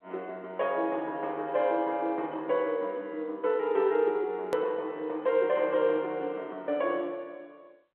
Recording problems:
phone line; 300 Hz to 4 kHz, G.711
edit click; at 4.5 s

